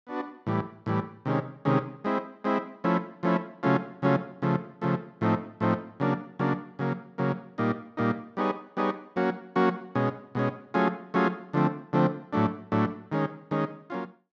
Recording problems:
none

